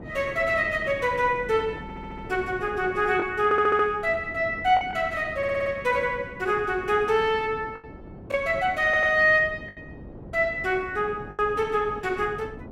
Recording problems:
wind on the microphone; below 400 Hz, SNR 17 dB
lost packets; 3% of the sound replaced, filled with the last packet
stutter; 4 times, first at 2 s

